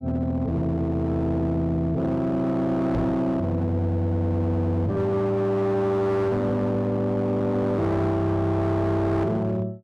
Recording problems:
distorted audio; hard clipping, signal-to-distortion ratio 10 dB
microphone bump; at 3 s; peak +2 dB vs average level

